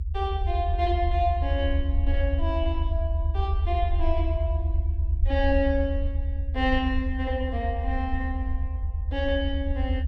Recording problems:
low-frequency rumble; below 78 Hz, SNR -2 dB

